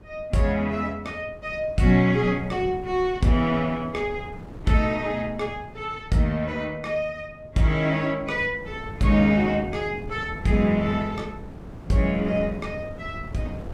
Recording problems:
wind noise; below 270 Hz, SNR 16 dB

